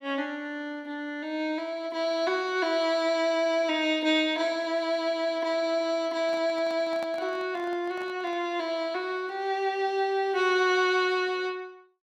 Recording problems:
handling noise; from 6 to 8.5 s; peak -8 dB vs average level

